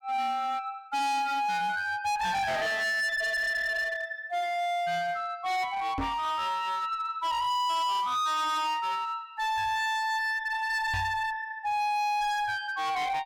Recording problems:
distorted audio; hard clipping, uneven, signal-to-distortion ratio 7 dB
knock on the microphone; at 6 s and at 11 s; peak 0 dB vs average level

